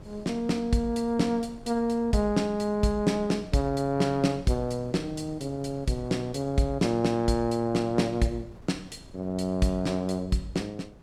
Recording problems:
wind noise; below 330 Hz, SNR 21 dB

